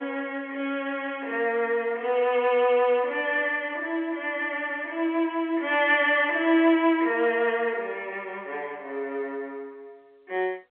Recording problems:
telephone audio; 280 Hz to 3.4 kHz, G.711

